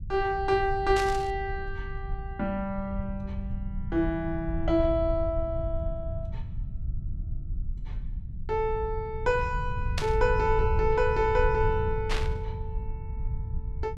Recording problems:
rumble; below 88 Hz, SNR 6 dB
static burst; at 1 s, at 10 s and at 12 s; peak 0 dB vs average level

